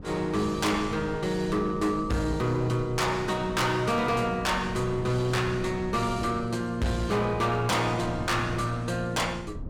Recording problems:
distortion; hard clipping, uneven, signal-to-distortion ratio 11 dB
wind on the microphone; below 210 Hz, SNR 13 dB

